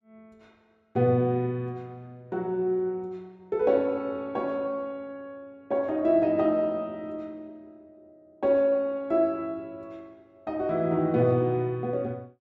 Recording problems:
none

